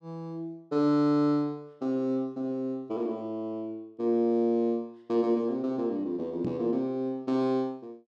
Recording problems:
microphone bump; at 6.5 s; peak -2 dB vs average level

